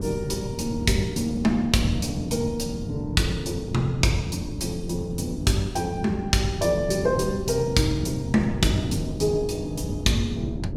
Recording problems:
wind noise; below 230 Hz, SNR 7 dB

